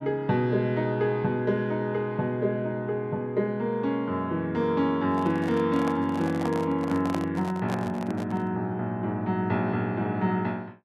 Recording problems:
handling noise; from 5 to 8.5 s; peak -2 dB vs average level

